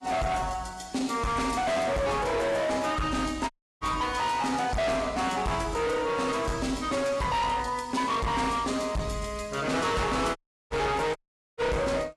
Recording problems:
lossy compression; AAC, log-spectral distance 3 dB, nothing above 11.3 kHz
distorted audio; hard clipping, signal-to-distortion ratio 7 dB
dropout; at 3.5 s, at 10 s and at 11 s

